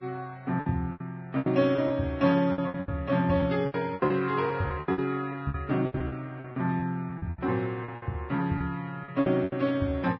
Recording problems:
lossy codec; Vorbis, log-spectral distance 2 dB, nothing above 5.3 kHz
lost packets; 17% of the sound replaced, filled with repeated pitch periods

